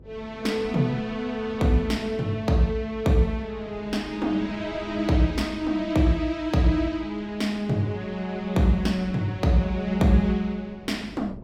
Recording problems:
electrical hum; 50 Hz, harmonics up to 600 Hz, SNR 25 dB
wind noise; below 320 Hz, SNR 21 dB

